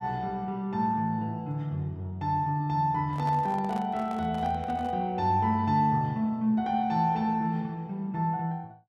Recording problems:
microphone handling noise; from 3 to 5 s; peak -9 dB vs average level

